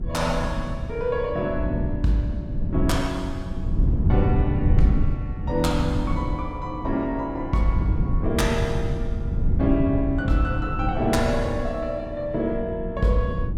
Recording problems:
wind on the microphone; below 130 Hz, SNR 1 dB

